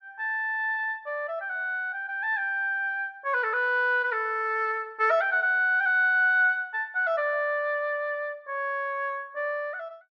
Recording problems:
none

